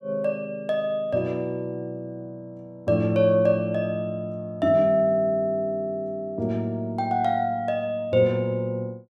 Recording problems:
none

